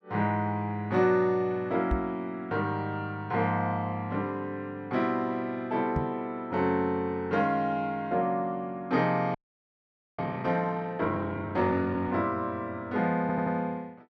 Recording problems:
microphone bump; at 2 s and at 6 s; peak +3 dB vs average level
frozen audio; at 9.5 s for 1 s
audio stuttering; at 13 s

